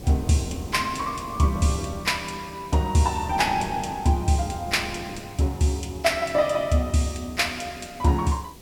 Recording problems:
hiss; SNR 24 dB
wind noise; below 380 Hz, SNR 16 dB

